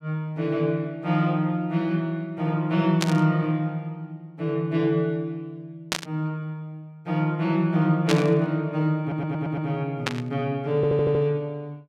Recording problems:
static burst; 4 times, first at 3 s; peak +4 dB vs average level
audio stuttering; at 9 s and at 11 s

